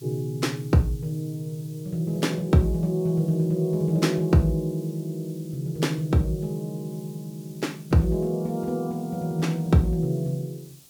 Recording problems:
hiss; SNR 25 dB

